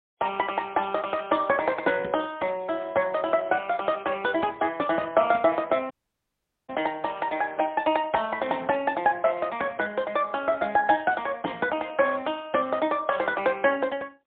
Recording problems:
telephone audio; 220 Hz to 3.4 kHz, AMR-NB, then MP3
audio cutting out; at 6 s for 1 s

